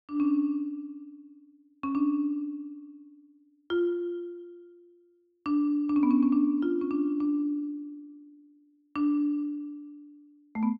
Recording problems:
none

